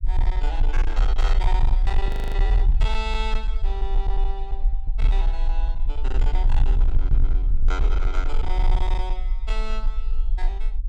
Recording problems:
distorted audio; hard clipping, signal-to-distortion ratio 11 dB
low-frequency rumble; below 42 Hz, SNR -9 dB
audio freezing; at 2 s

